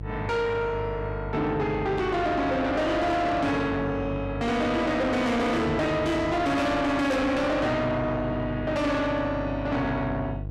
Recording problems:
distortion; soft clipping, signal-to-distortion ratio 5 dB
hum; 50 Hz, harmonics up to 650 Hz, SNR 10 dB
static burst; at 2 s and at 7 s; peak -13 dB vs average level

